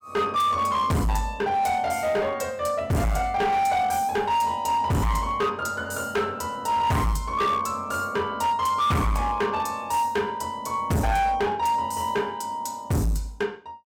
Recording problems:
distortion; hard clipping, signal-to-distortion ratio 6 dB

